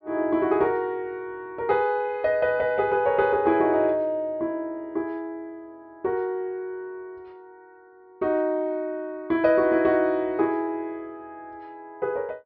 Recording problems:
treble cut off; nothing above 5.5 kHz

